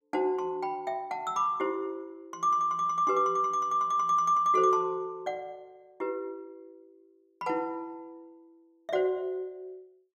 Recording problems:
none

